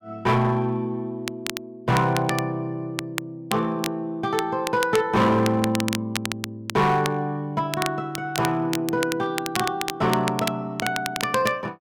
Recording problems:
distorted audio; hard clipping, uneven, signal-to-distortion ratio 12 dB
crackling; vinyl, SNR 8 dB

